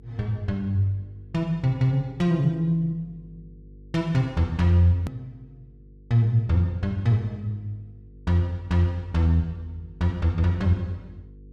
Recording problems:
hum; 50 Hz, harmonics up to 500 Hz, SNR 24 dB
click at an edit; at 5 s

